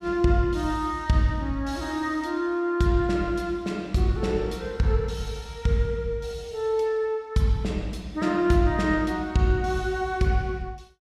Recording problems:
none

